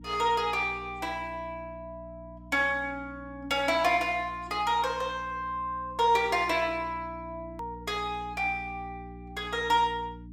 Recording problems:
electrical hum; 60 Hz, harmonics up to 300 Hz, SNR 18 dB
click at an edit; at 7.5 s

